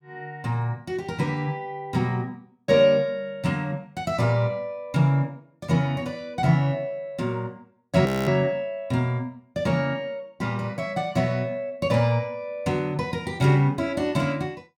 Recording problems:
frozen audio; at 8 s

